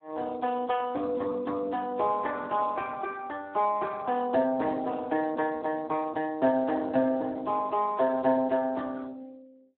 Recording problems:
telephone audio; 220 Hz to 2.9 kHz, Speex

